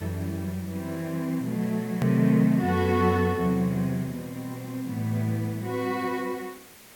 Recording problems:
hiss; slope -2 dB per octave, SNR 21 dB
click at an edit; at 2 s

